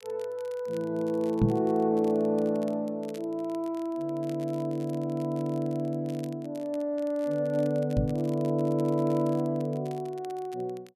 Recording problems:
crackle; vinyl, SNR 26 dB
microphone thump; at 1.5 s and at 8 s; peak +8 dB vs average level

